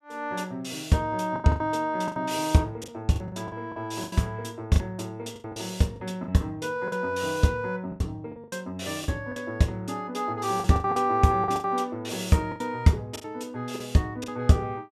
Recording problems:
packet loss; 11% of the sound replaced, filled with the last packet

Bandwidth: 14.5 kHz